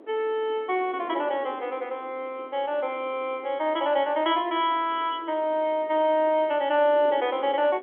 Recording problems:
phone line; 260 Hz to 3.4 kHz, G.711
wind on the microphone; below 520 Hz, SNR 19 dB

